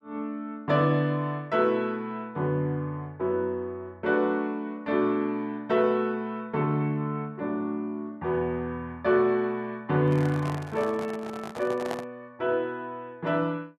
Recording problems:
microphone handling noise; from 10 to 12 s; peak -2 dB vs average level

